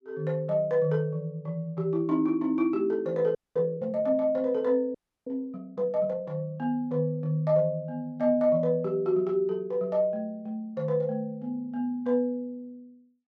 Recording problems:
audio freezing; at 3.5 s and at 5 s

